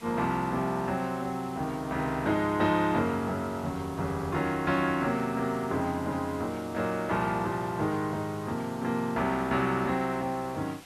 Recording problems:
background hiss; slope -2 dB per octave, SNR 20 dB

